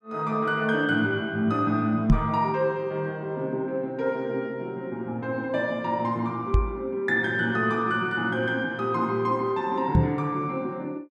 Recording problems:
knock on the microphone; at 2 s, at 6.5 s and at 10 s; peak +9 dB vs average level

